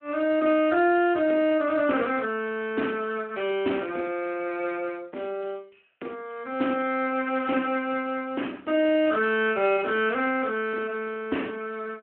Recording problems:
telephone audio; 240 Hz to 3.1 kHz, Speex

